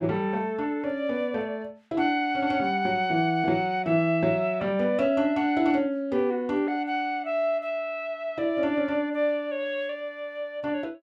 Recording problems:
none

